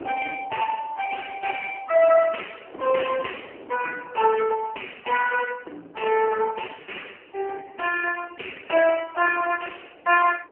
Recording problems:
telephone audio; 280 Hz to 3 kHz, AMR-NB
wind noise; below 660 Hz, SNR 22 dB

